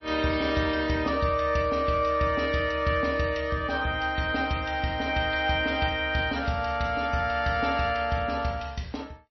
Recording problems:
lossy compression; MP3, log-spectral distance 3 dB, nothing above 5.8 kHz

